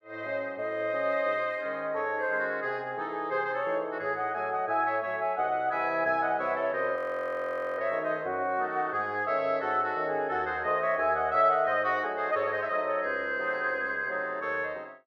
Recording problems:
frozen audio; at 7 s for 1 s

